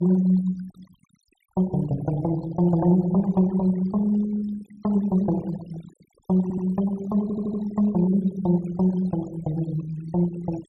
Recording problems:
denoising artefacts; signal-to-artefact ratio 21 dB
stutter; at 6.5 s and at 7 s

